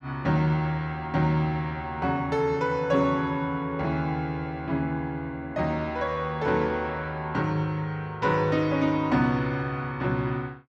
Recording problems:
none

